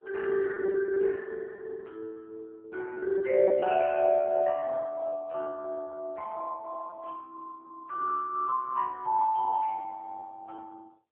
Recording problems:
phone line; 320 Hz to 2.1 kHz, AMR-NB
packet loss; 7% of the sound replaced, filled with repeated pitch periods

